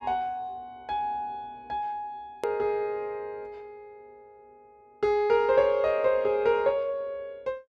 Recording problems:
click at an edit; at 2.5 s

